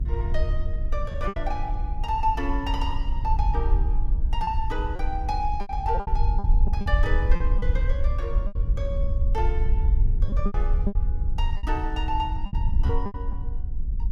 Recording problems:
hum; 60 Hz, harmonics up to 840 Hz, SNR 19 dB
wind on the microphone; below 58 Hz, SNR -4 dB
lost packets; 8% of the sound replaced, filled with repeated pitch periods

